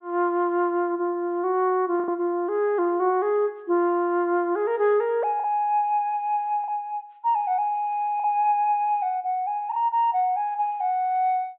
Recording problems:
treble cut off; nothing above 4 kHz
lost packets; 2% of the sound replaced, filled with the last packet

